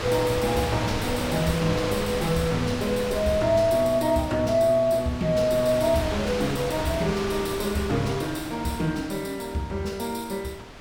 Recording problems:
wind noise; below 2.5 kHz, SNR 7 dB

